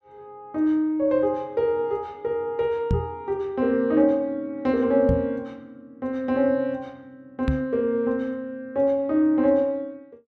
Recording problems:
microphone thump; at 3 s, at 5 s and at 7.5 s; peak +3 dB vs average level

